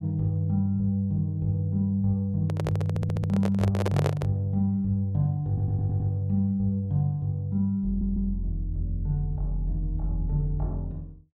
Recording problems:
handling noise; from 2.5 to 4.5 s; peak +2 dB vs average level
audio stuttering; at 3 s, at 5.5 s and at 8 s

